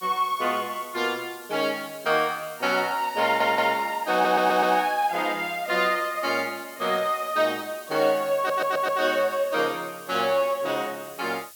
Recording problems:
hiss; SNR 19 dB
audio stuttering; at 3 s, at 4 s and at 8.5 s

